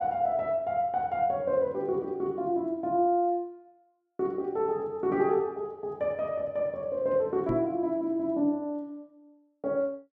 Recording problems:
knock on the microphone; at 7.5 s; peak -1 dB vs average level

